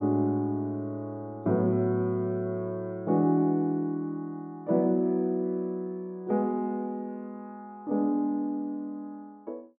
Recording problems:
none

